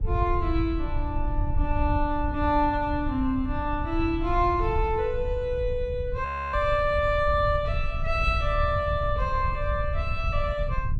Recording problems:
wind on the microphone; below 84 Hz, SNR 4 dB
audio freezing; at 6.5 s

